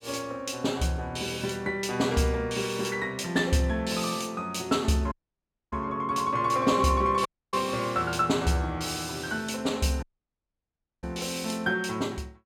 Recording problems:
dropout; at 5 s for 0.5 s, at 7.5 s and at 10 s for 1 s

